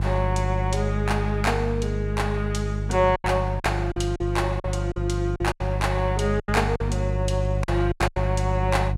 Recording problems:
electrical hum; 50 Hz, harmonics up to 350 Hz, SNR 1 dB
lost packets; 8% of the sound replaced, filled with silence

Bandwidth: 16 kHz